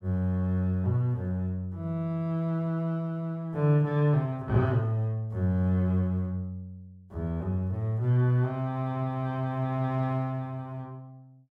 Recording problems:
none

